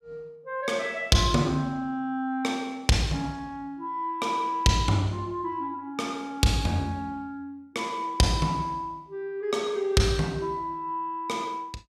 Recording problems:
none

